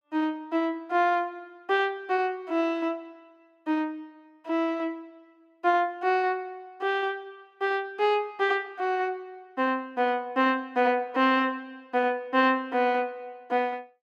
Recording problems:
none

